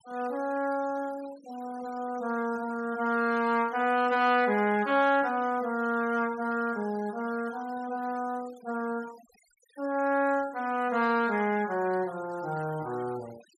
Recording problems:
denoising artefacts; signal-to-artefact ratio 22 dB

